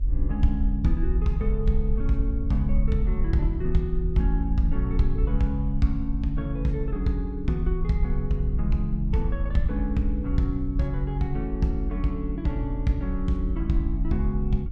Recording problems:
rumble; below 50 Hz, SNR 2 dB

